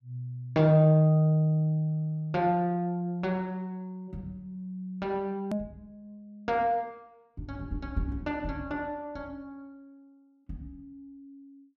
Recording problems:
edit click; at 5.5 s

